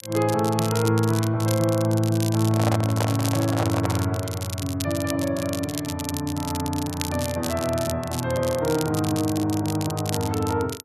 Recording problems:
crackle; vinyl, SNR 10 dB
handling noise; from 2.5 to 4 s; peak +3 dB vs average level

